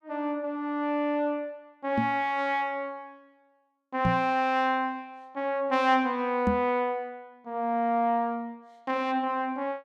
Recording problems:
microphone thump; at 2 s, at 4 s and at 6.5 s; peak +4 dB vs average level

